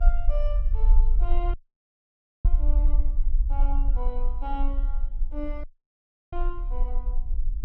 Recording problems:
hum; 50 Hz, harmonics up to 700 Hz, SNR 19 dB
rumble; below 42 Hz, strongest tone 20 Hz, SNR -11 dB
audio cutting out; at 1.5 s for 1 s and at 5.5 s for 0.5 s

